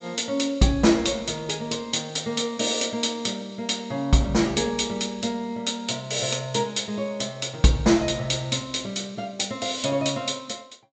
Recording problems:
treble missing; nothing above 8 kHz

